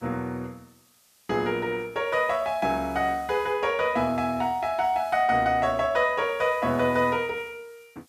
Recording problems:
hiss; slope +1 dB per octave, SNR 29 dB

